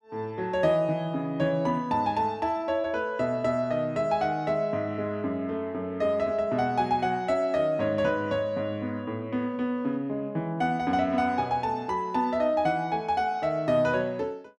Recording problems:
none

